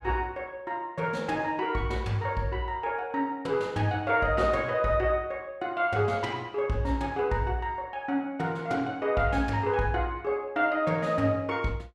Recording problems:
none

